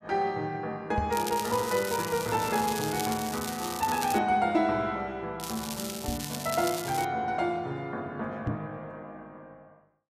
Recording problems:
microphone thump; at 1 s, at 6 s and at 8.5 s; peak +1 dB vs average level
crackling; from 1 to 4 s and from 5.5 to 7 s; loose cable, SNR 7 dB

